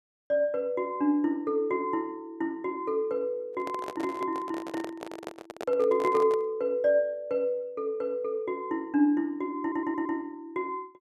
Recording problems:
handling noise; from 3.5 to 6.5 s; peak -4 dB vs average level
stutter; at 9.5 s

